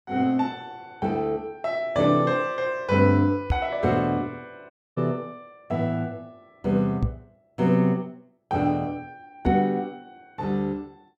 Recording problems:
microphone bump; at 3.5 s, at 7 s and at 9.5 s; peak +5 dB vs average level
audio cutting out; at 4.5 s

